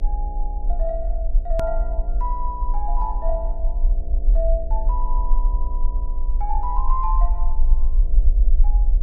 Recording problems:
hum; 60 Hz, harmonics up to 720 Hz, SNR 13 dB
low-frequency rumble; below 42 Hz, SNR -6 dB
click at an edit; at 1.5 s

